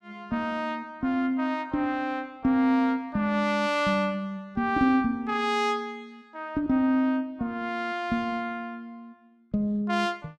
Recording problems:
none

